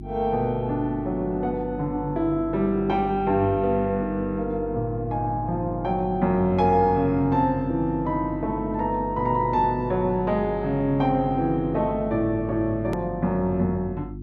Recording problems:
hum; 50 Hz, harmonics up to 350 Hz, SNR 12 dB
edit click; at 13 s

